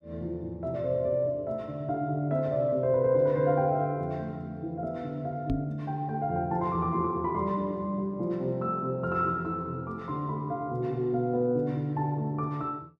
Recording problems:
microphone bump; at 5.5 s; peak +4 dB vs average level

